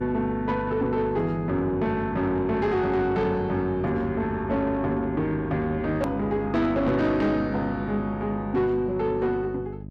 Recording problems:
distorted audio; soft clipping, signal-to-distortion ratio 12 dB
mains hum; 50 Hz, harmonics up to 650 Hz, SNR 11 dB
edit click; at 6 s

